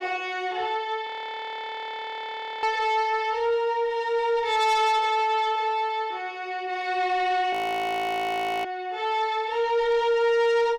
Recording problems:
distorted audio; soft clipping, signal-to-distortion ratio 11 dB
audio freezing; at 1 s for 1.5 s and at 7.5 s for 1 s

